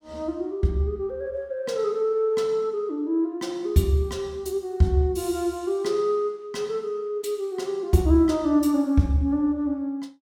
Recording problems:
none

